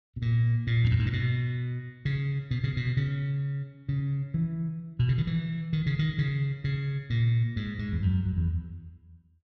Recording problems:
none

